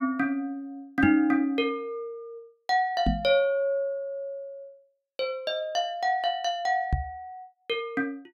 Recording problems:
knock on the microphone; at 1 s, at 3 s and at 7 s; peak +5 dB vs average level

